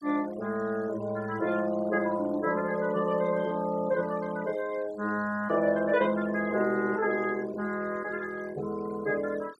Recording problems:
noise reduction artefacts; signal-to-artefact ratio 21 dB

